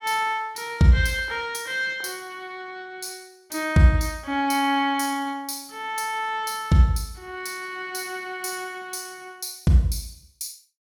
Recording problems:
none

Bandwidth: 18 kHz